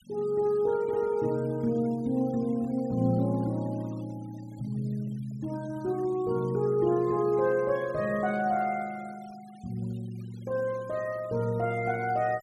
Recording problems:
noise reduction artefacts; signal-to-artefact ratio 25 dB

